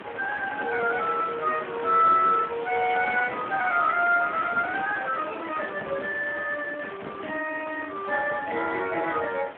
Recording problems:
phone line; 300 Hz to 3.6 kHz, Speex
wind on the microphone; below 2 kHz, SNR 12 dB

